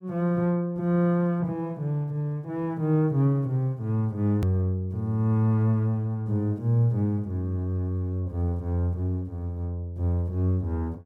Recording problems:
edit click; at 4.5 s

